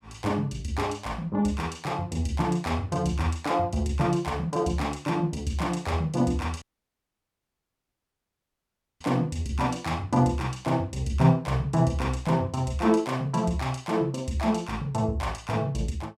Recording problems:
audio cutting out; at 6.5 s for 2.5 s

